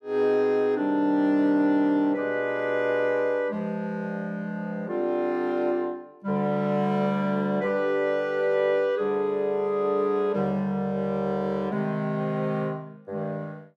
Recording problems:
none

